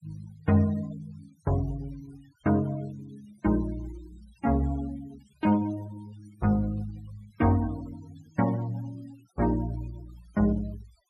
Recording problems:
denoising artefacts; signal-to-artefact ratio 22 dB

